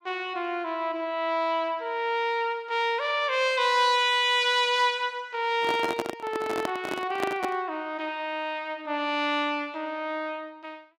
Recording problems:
microphone handling noise; from 5.5 to 7.5 s; peak 0 dB vs average level

